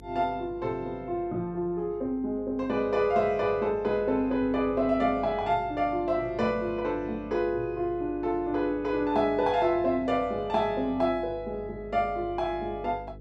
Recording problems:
electrical hum; 50 Hz, harmonics up to 500 Hz, SNR 20 dB

